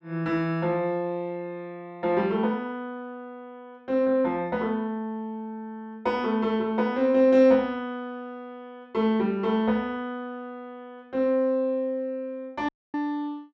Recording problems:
dropout; at 13 s

